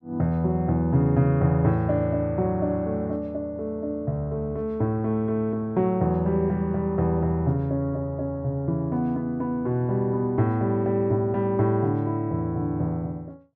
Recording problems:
none

